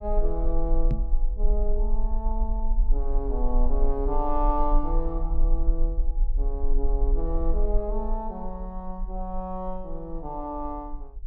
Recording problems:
low-frequency rumble; below 38 Hz, strongest tone 22 Hz, SNR -4 dB
microphone bump; at 1 s; peak +8 dB vs average level

